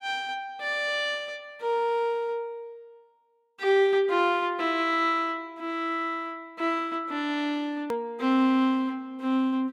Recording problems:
hard cut with a click; at 8 s

